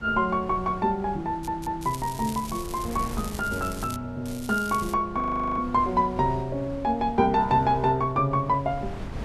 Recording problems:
wind noise; below 250 Hz, SNR 14 dB
stutter; at 1.5 s
crackle; from 1.5 to 4 s and at 4.5 s; loose cable, SNR 15 dB
frozen audio; at 5 s

